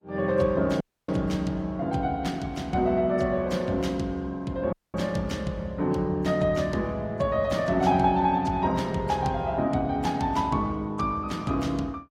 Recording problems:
codec artefacts; Opus, then AAC, log-spectral distance 2 dB, nothing above 15.5 kHz
audio cutting out; at 1 s and at 4.5 s

